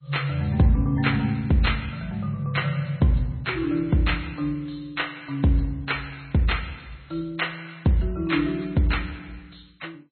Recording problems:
codec artefacts; MP2, then MP3, log-spectral distance 5 dB, nothing above 4.2 kHz

